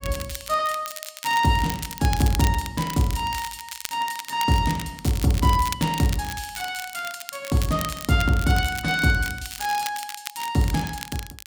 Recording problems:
crackle; vinyl, SNR 11 dB

